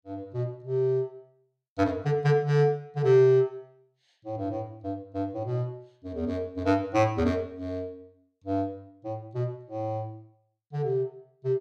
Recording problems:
none

